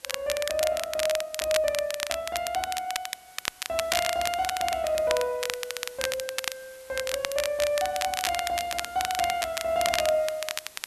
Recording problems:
background hiss; slope 0 dB per octave, SNR 21 dB
crackling; vinyl, SNR 3 dB

